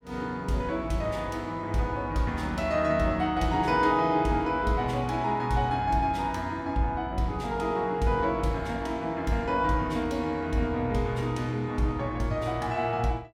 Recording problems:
none

